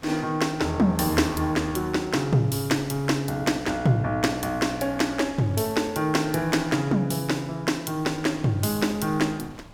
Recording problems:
wind noise; below 990 Hz, SNR 23 dB

